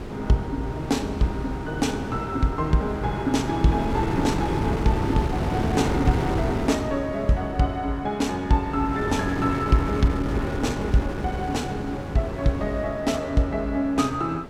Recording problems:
wind noise; below 440 Hz, SNR 5 dB

